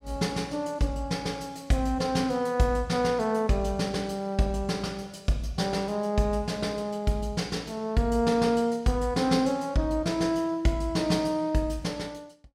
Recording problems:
none

